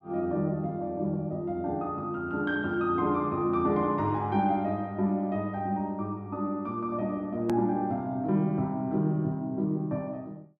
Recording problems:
hard cut with a click; at 7.5 s

